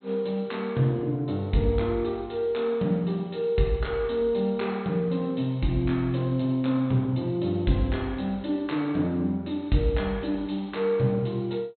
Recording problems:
treble missing; nothing above 4.2 kHz

